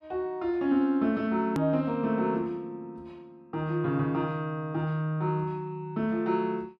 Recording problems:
click at an edit; at 1.5 s

